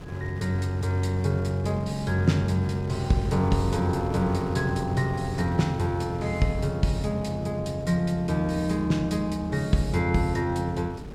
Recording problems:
hum; 50 Hz, harmonics up to 450 Hz, SNR 17 dB
wind noise; below 350 Hz, SNR 14 dB

